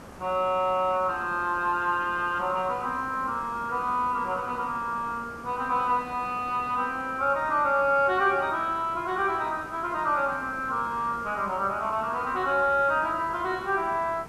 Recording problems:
background hiss; SNR 18 dB

